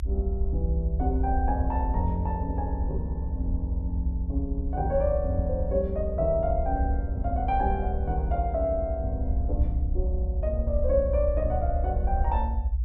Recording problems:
low-frequency rumble; below 66 Hz, SNR 0 dB

